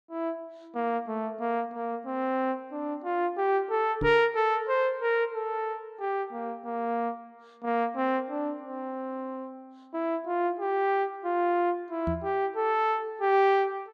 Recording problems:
knock on the microphone; at 4 s and at 12 s; peak 0 dB vs average level

